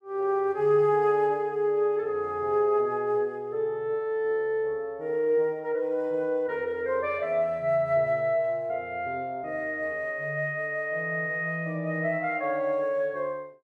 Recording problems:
none

